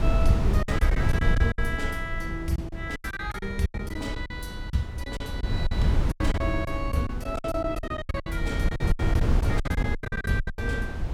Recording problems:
wind on the microphone; below 110 Hz, SNR -2 dB
lost packets; 17% of the sound replaced, filled with silence

